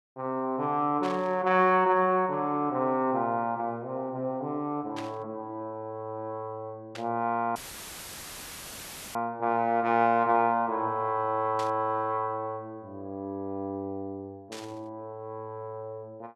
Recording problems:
static burst; 5 times, first at 1 s; peak -8 dB vs average level
audio cutting out; at 7.5 s for 1.5 s; filled with static

